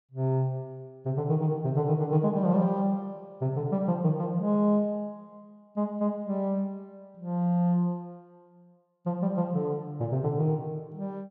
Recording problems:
none

